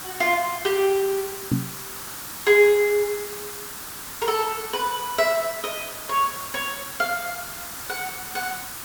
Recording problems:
hiss; SNR 9 dB
microphone thump; at 1.5 s; peak +4 dB vs average level

